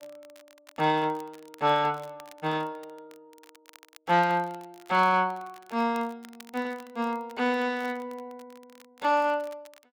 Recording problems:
crackle; vinyl, SNR 27 dB

